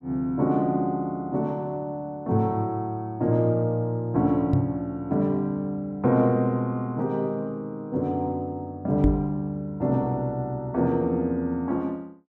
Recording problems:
microphone thump; at 4.5 s and at 9 s; peak +7 dB vs average level

